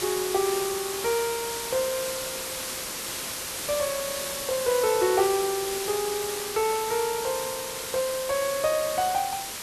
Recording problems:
background hiss; slope -1 dB per octave, SNR 4 dB

